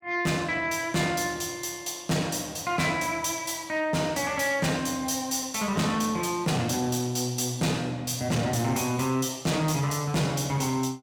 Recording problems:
distortion; soft clipping, signal-to-distortion ratio 10 dB

